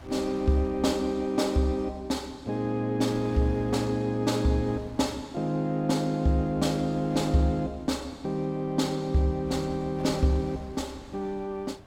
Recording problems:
wind noise; below 520 Hz, SNR 21 dB

